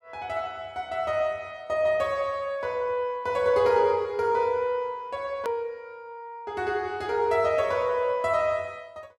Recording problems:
hard cut with a click; at 5.5 s

